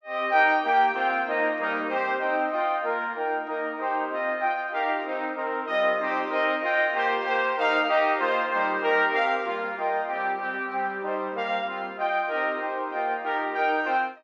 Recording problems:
none

